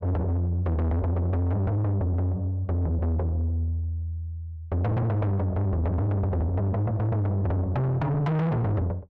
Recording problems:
distortion; soft clipping, signal-to-distortion ratio 6 dB

